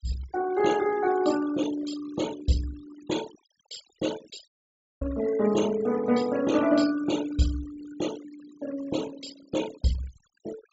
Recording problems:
low-pass filter; nothing above 8 kHz
denoising artefacts; signal-to-artefact ratio 14 dB
dropout; at 4.5 s for 0.5 s

